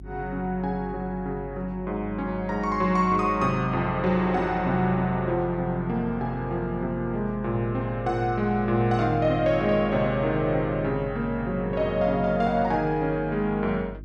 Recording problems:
hum; 50 Hz, harmonics up to 350 Hz, SNR 16 dB

